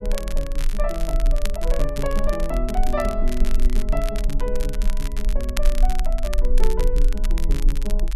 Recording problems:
rumble; below 36 Hz, strongest tone 18 Hz, SNR -4 dB
crackle; vinyl, SNR 9 dB

